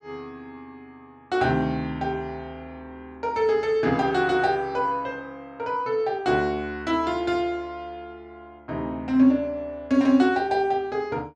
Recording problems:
none

